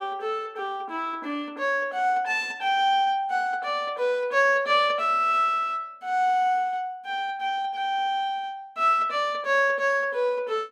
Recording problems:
none

